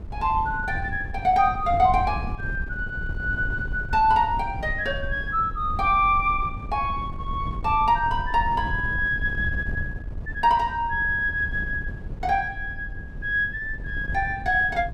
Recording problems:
wind on the microphone; below 100 Hz, SNR 10 dB

